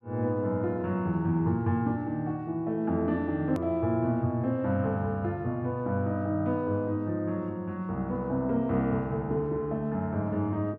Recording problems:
edit click; at 3.5 s

